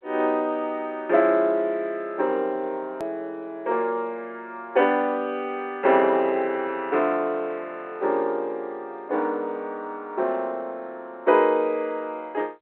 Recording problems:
telephone audio; 320 Hz to 3.2 kHz, G.711
edit click; at 3 s

